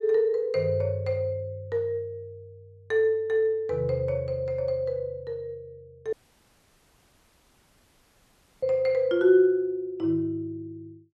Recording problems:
audio cutting out; at 6 s for 2.5 s

